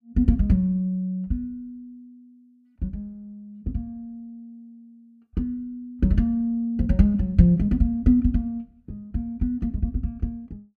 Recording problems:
none

